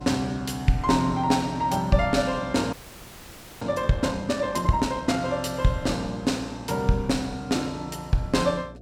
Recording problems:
hum; 60 Hz, harmonics up to 720 Hz, SNR 21 dB
frozen audio; at 2.5 s for 1 s

